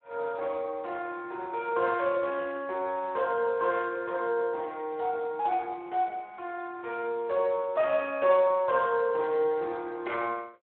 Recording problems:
telephone audio; 370 Hz to 2.8 kHz, Speex

